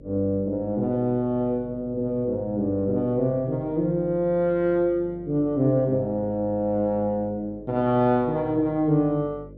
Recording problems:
hum; 50 Hz, harmonics up to 600 Hz, SNR 21 dB

